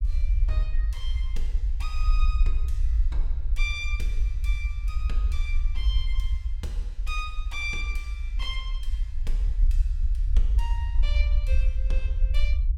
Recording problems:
low-frequency rumble; below 54 Hz, SNR -9 dB

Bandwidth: 16 kHz